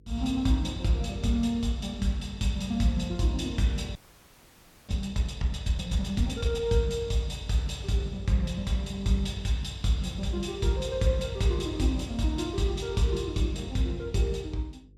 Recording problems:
hum; 50 Hz, harmonics up to 500 Hz, SNR 24 dB
audio freezing; at 4 s for 1 s

